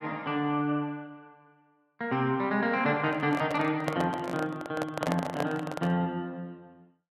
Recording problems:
handling noise; from 3 to 6 s; peak +2 dB vs average level

